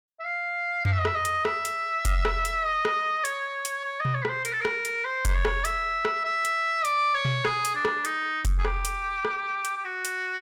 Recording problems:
distortion; soft clipping, signal-to-distortion ratio 11 dB

